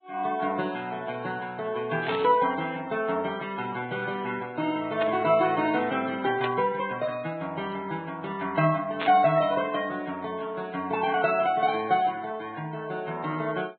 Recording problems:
treble cut off; nothing above 3.7 kHz
codec artefacts; Vorbis, log-spectral distance 3 dB
static burst; 4 times, first at 2 s; peak 0 dB vs average level

